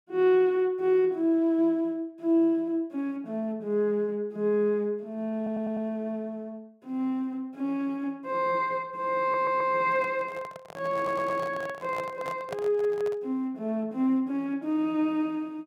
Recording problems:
audio stuttering; at 5.5 s, at 9 s and at 11 s
handling noise; from 10 to 13 s; peak -5 dB vs average level

